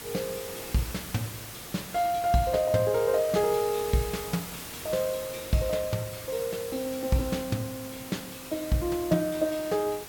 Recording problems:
hiss; slope -2 dB per octave, SNR 10 dB

